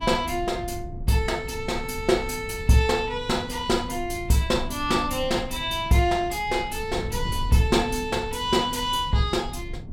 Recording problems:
wind noise; below 120 Hz, SNR 12 dB

